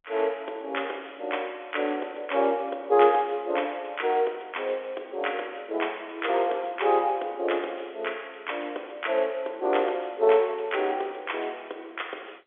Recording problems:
telephone audio; 320 Hz to 3.5 kHz, G.711

